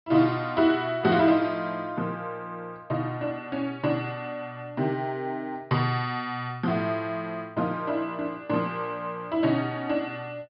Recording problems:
treble missing; nothing above 5.5 kHz

